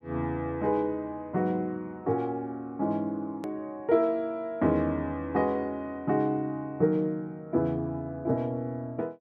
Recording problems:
edit click; at 3.5 s

